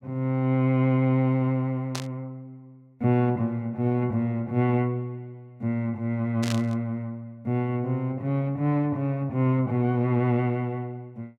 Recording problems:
burst of static; at 2 s and at 6.5 s; peak -3 dB vs average level

